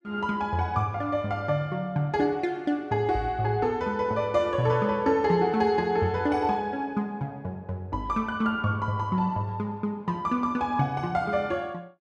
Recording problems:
none

